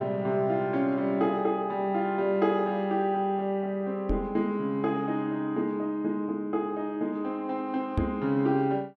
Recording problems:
microphone thump; at 4 s and at 8 s; peak +3 dB vs average level

